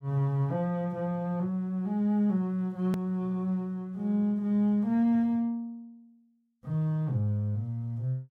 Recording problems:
edit click; at 3 s

